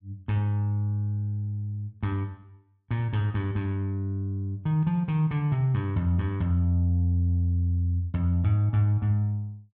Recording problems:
none

